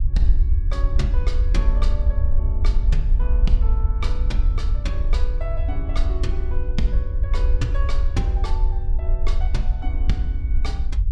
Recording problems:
rumble; below 58 Hz, SNR -10 dB

